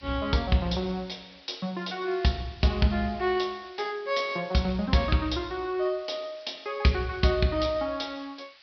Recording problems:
treble missing; nothing above 5.5 kHz
background hiss; SNR 23 dB

